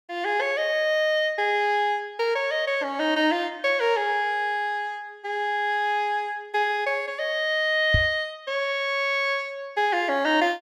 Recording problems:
knock on the microphone; at 8 s; peak +4 dB vs average level

